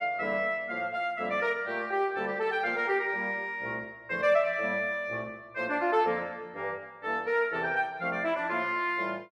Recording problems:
none

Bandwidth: 13 kHz